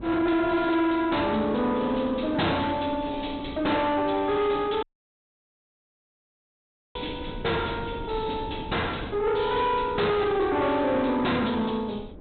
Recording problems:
low-pass filter; nothing above 4 kHz
distortion; soft clipping, signal-to-distortion ratio 10 dB
wind noise; below 360 Hz, SNR 16 dB
dropout; at 5 s for 2 s

